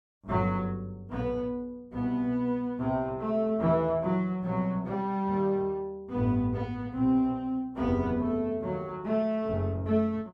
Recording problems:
none

